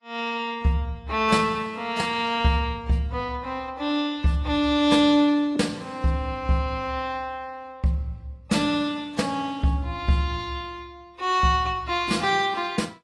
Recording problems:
lossy compression; AAC, log-spectral distance 2 dB

